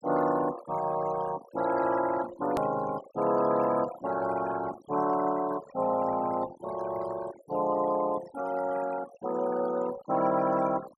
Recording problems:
denoising artefacts; signal-to-artefact ratio 14 dB
edit click; at 2.5 s

